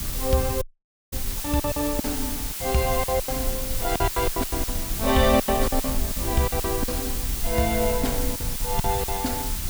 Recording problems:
background hiss; slope +1 dB per octave, SNR 3 dB
rumble; below 64 Hz, SNR 8 dB
wind noise; below 1.7 kHz, SNR 22 dB
packet loss; 12% of the sound replaced, filled with silence
dropout; at 0.5 s for 0.5 s

